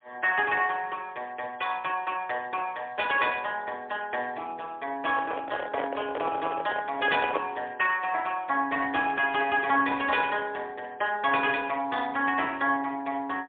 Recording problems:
telephone audio; 300 Hz to 3.4 kHz, AMR-NB, then MP3
handling noise; from 5 to 7.5 s; peak +2 dB vs average level

